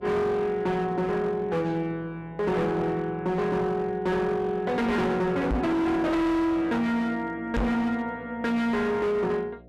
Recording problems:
distorted audio; hard clipping, signal-to-distortion ratio 7 dB
hum; 60 Hz, harmonics up to 720 Hz, SNR 26 dB
knock on the microphone; at 5.5 s and at 7.5 s; peak +3 dB vs average level

